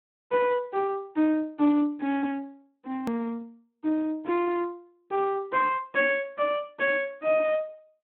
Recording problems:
phone line; 170 Hz to 3.2 kHz, Speex
click at an edit; at 3 s

